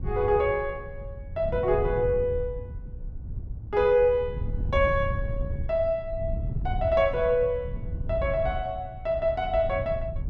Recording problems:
wind noise; below 110 Hz, SNR 8 dB

